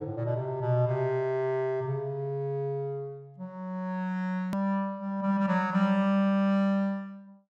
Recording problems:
hard cut with a click; at 4.5 s

